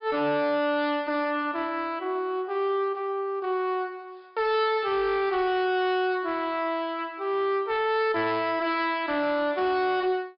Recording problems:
treble missing; nothing above 5.5 kHz
distortion; hard clipping, uneven, signal-to-distortion ratio 11 dB

